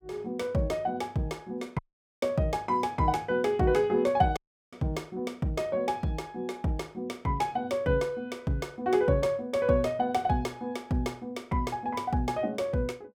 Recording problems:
audio cutting out; at 2 s and at 4.5 s

